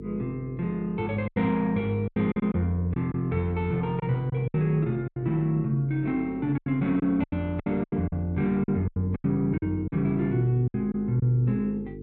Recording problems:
hum; 50 Hz, harmonics up to 450 Hz, SNR 15 dB
packet loss; 10% of the sound replaced, filled with silence

